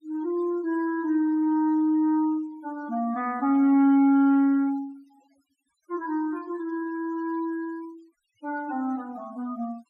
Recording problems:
denoising artefacts; signal-to-artefact ratio 27 dB

